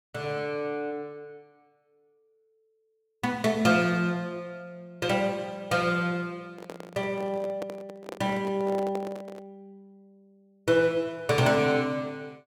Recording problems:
handling noise; from 6.5 to 9.5 s; peak -6 dB vs average level

